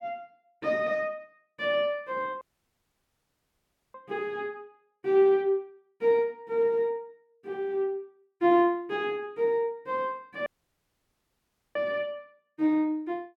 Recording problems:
audio cutting out; at 2.5 s for 1.5 s and at 10 s for 1.5 s

